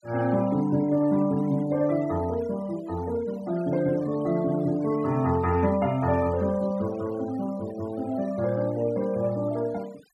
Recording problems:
denoising artefacts; signal-to-artefact ratio 21 dB

